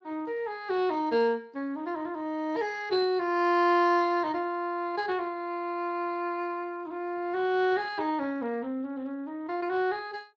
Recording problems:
lossy codec; Speex, log-spectral distance 2 dB

